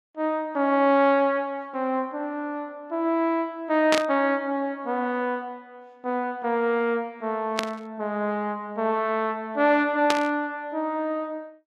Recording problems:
burst of static; at 4 s, at 7.5 s and at 10 s; peak +4 dB vs average level

